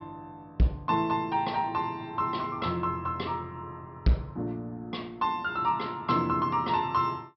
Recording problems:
low-pass filter; nothing above 5.6 kHz
distorted audio; hard clipping, signal-to-distortion ratio 12 dB

